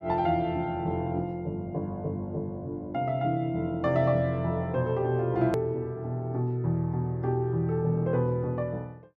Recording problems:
hard cut with a click; at 5.5 s

